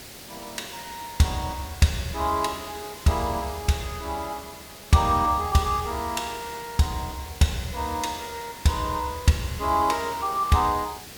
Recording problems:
background hiss; SNR 15 dB

